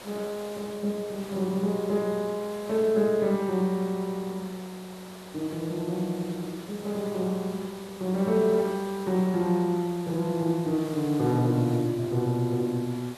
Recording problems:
hiss; SNR 17 dB

